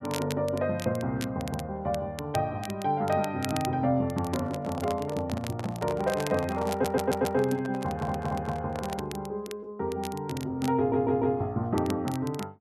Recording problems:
crackle; vinyl, SNR 15 dB
handling noise; from 4.5 to 9 s; peak -4 dB vs average level
stutter; at 6.5 s, at 8 s and at 11 s

